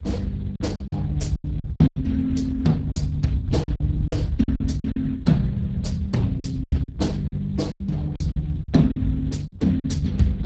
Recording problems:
lossy compression; Speex, then Opus, log-spectral distance 2 dB, nothing above 7.6 kHz
rumble; below 110 Hz, SNR 6 dB
lost packets; 12% of the sound replaced, filled with silence

